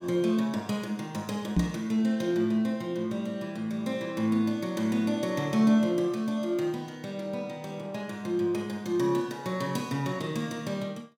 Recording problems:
knock on the microphone; at 1.5 s; peak +8 dB vs average level

